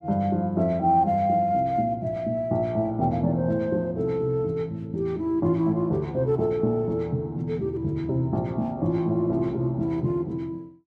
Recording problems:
none

